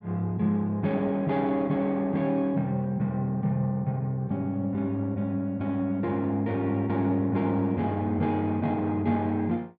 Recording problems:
none

